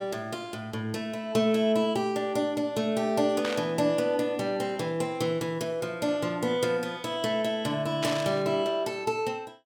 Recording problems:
burst of static; at 3.5 s and at 8 s; peak -1 dB vs average level

